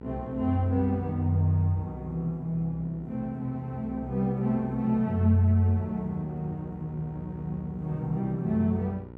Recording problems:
hum; 60 Hz, harmonics up to 1.4 kHz, SNR 18 dB

